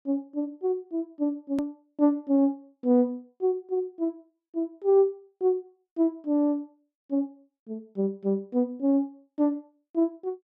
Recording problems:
click at an edit; at 1.5 s

